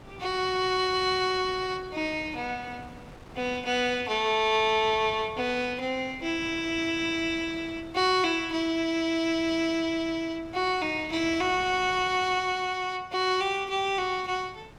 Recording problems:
wind noise; below 900 Hz, SNR 20 dB

